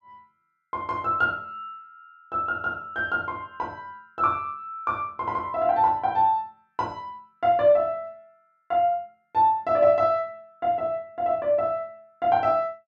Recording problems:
none

